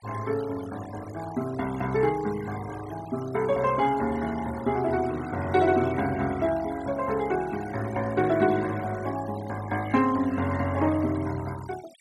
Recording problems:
denoising artefacts; signal-to-artefact ratio 17 dB

